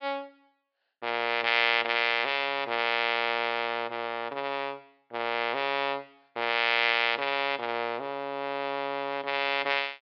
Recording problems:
treble cut off; nothing above 5.5 kHz

